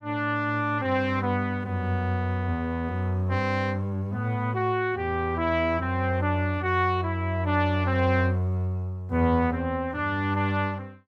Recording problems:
none

